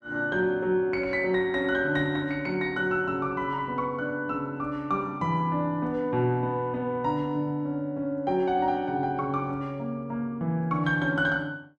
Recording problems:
none

